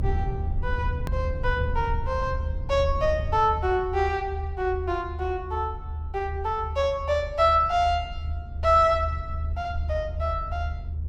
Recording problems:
low-frequency rumble; below 78 Hz, SNR 6 dB
click at an edit; at 1 s

